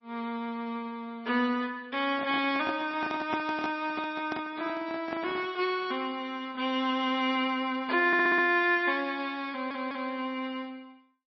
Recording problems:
lossy compression; MP3, log-spectral distance 2 dB, nothing above 5.2 kHz
microphone handling noise; from 2 to 5.5 s; peak 0 dB vs average level
stutter; at 8 s and at 9.5 s

